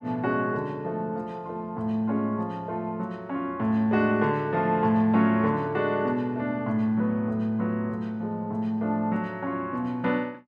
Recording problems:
none

